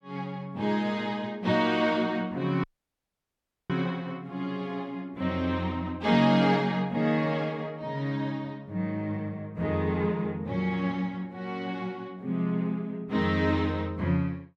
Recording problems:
audio cutting out; at 2.5 s for 1 s

